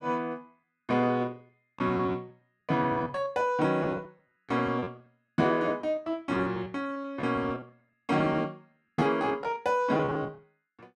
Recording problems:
lost packets; 14% of the sound replaced, filled with repeated pitch periods

